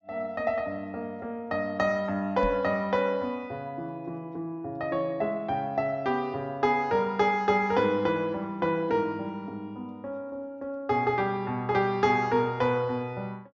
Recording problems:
treble missing; nothing above 7.3 kHz
knock on the microphone; at 2.5 s; peak -1 dB vs average level

